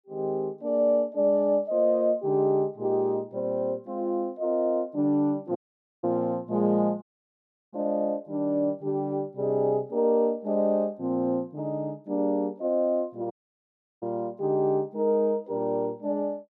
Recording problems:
audio cutting out; at 5.5 s, at 7 s for 0.5 s and at 13 s for 0.5 s

